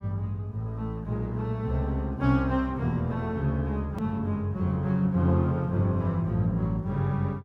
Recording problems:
click at an edit; at 4 s

